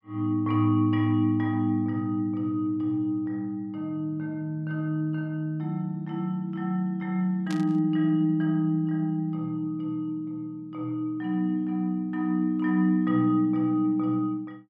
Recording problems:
static burst; at 7.5 s; peak -9 dB vs average level

